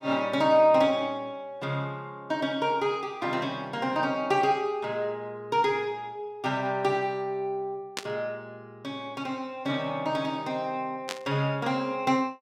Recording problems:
burst of static; at 8 s and at 11 s; peak 0 dB vs average level

